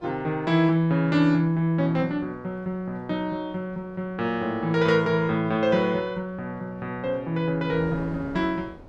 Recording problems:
wind on the microphone; below 550 Hz, SNR 22 dB

